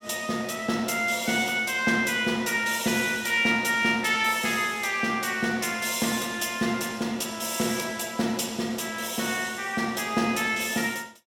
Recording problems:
none

